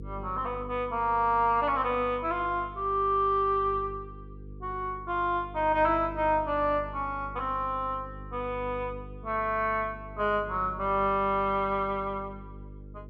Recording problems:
hum; 50 Hz, harmonics up to 500 Hz, SNR 16 dB

